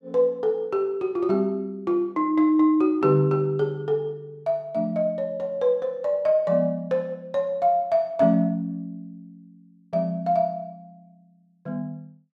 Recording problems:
none

